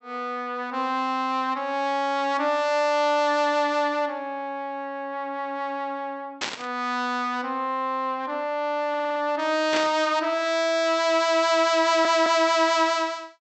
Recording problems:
treble missing; nothing above 7.9 kHz
burst of static; at 6.5 s and at 9.5 s; peak +1 dB vs average level
stutter; at 9 s and at 12 s

